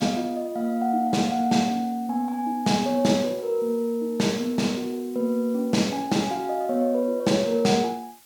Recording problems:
hiss; slope +1 dB per octave, SNR 25 dB

